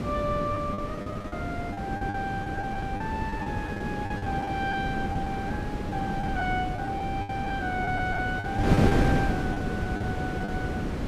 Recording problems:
wind noise; below 400 Hz, SNR -2 dB
lost packets; 11% of the sound replaced, filled with the last packet

